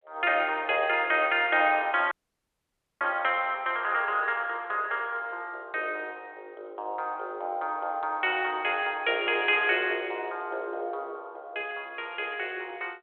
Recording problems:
telephone audio; 280 Hz to 3.4 kHz, G.726
dropout; at 2 s for 1 s

